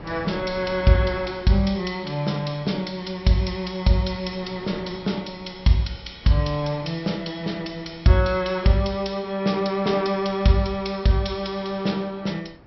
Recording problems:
treble missing; nothing above 5.6 kHz
wind noise; below 670 Hz, SNR 22 dB

